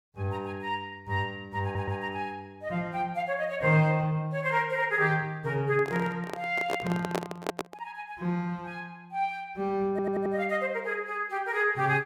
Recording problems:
stutter; at 1.5 s and at 10 s
microphone handling noise; from 5.5 to 8 s; peak +3 dB vs average level

